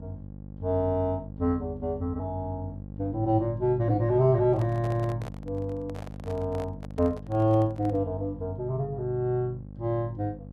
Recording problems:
hum; 50 Hz, harmonics up to 600 Hz, SNR 13 dB
microphone handling noise; from 4.5 to 8 s; peak -10 dB vs average level

